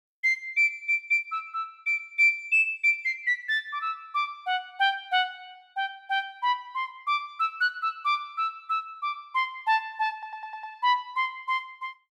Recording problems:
audio stuttering; at 10 s

